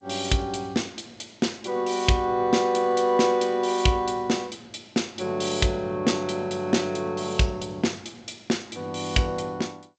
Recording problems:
lossy codec; G.722, log-spectral distance 5 dB, nothing above 7.8 kHz

